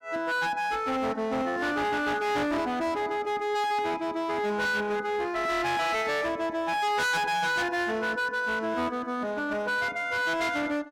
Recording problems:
distorted audio; hard clipping, signal-to-distortion ratio 8 dB

